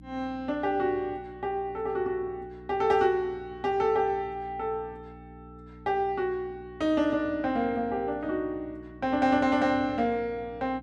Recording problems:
hum; 60 Hz, harmonics up to 300 Hz, SNR 20 dB

